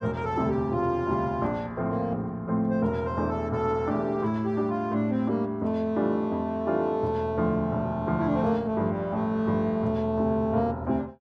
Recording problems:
none

